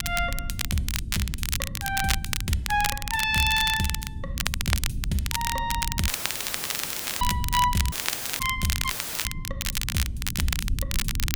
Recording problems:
low-frequency rumble; below 110 Hz, SNR 7 dB
crackling; vinyl, SNR 2 dB
dropout; at 6 s for 1 s, at 8 s and at 9 s; filled with static

